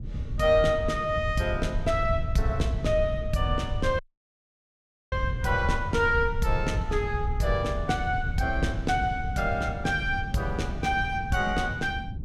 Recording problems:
rumble; below 90 Hz, SNR 7 dB
wind noise; below 160 Hz, SNR 10 dB
dropout; at 4 s for 1 s

